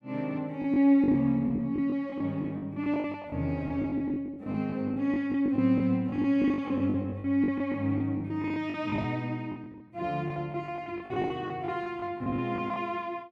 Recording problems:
packet loss; 15% of the sound replaced, filled with the last packet

